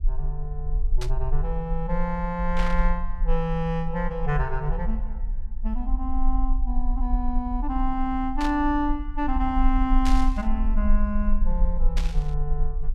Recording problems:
rumble; below 40 Hz, strongest tone 20 Hz, SNR 0 dB
burst of static; 5 times, first at 1 s; peak -2 dB vs average level

